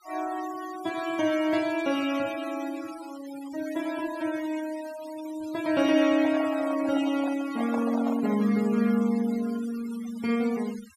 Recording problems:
denoising artefacts; signal-to-artefact ratio 16 dB
handling noise; from 6 to 8.5 s; peak -4 dB vs average level

